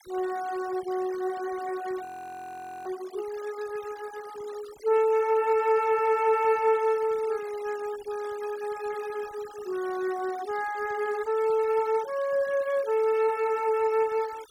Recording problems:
noise reduction artefacts; signal-to-artefact ratio 20 dB
audio freezing; at 2 s for 1 s

